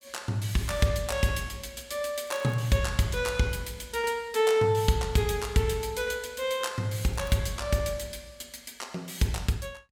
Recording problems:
crackle; at 2.5 s and at 7 s; loose cable, SNR 25 dB

